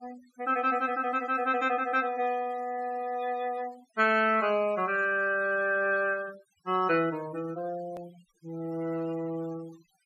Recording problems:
noise reduction artefacts; signal-to-artefact ratio 21 dB
click at an edit; at 8 s

